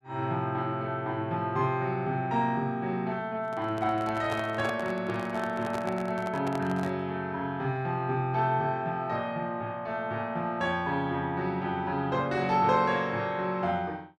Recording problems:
microphone handling noise; from 3.5 to 7 s; peak -3 dB vs average level

